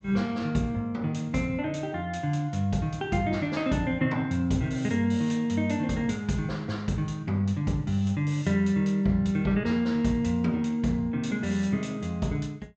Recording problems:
treble cut off; nothing above 8 kHz

